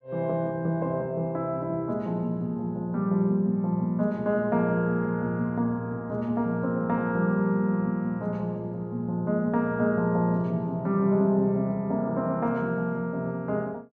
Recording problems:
none

